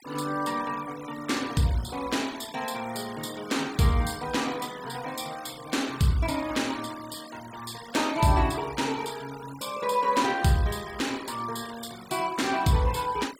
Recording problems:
denoising artefacts; signal-to-artefact ratio 16 dB

